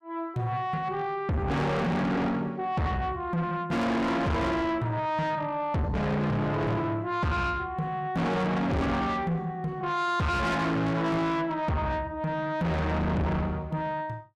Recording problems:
distortion; soft clipping, signal-to-distortion ratio 6 dB

